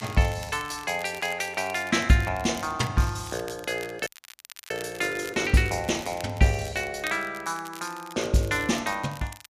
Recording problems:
crackling; vinyl, SNR 18 dB
audio cutting out; at 4 s for 0.5 s

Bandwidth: 14.5 kHz